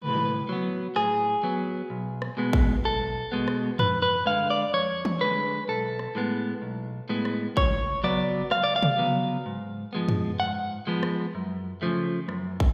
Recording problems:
none

